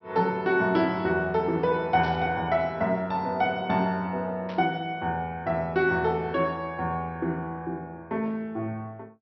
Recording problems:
treble cut off; nothing above 5.8 kHz
static burst; at 2 s and at 4.5 s; peak -13 dB vs average level

